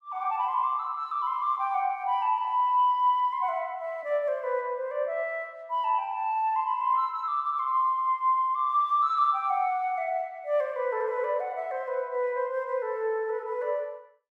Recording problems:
none

